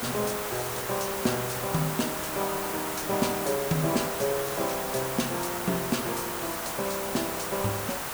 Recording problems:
hiss; SNR 1 dB

